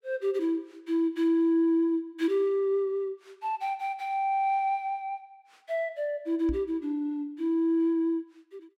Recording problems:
microphone thump; at 6.5 s; peak -3 dB vs average level

